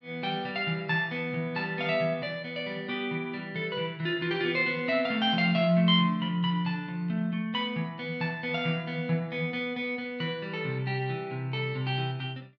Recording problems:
none

